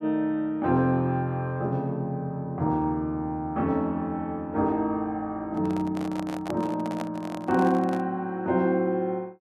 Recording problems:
handling noise; from 5.5 to 8 s; peak -4 dB vs average level

